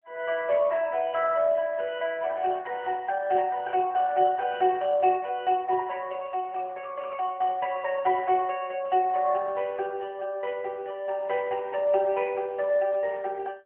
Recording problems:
telephone audio; 280 Hz to 3.1 kHz, AMR-NB

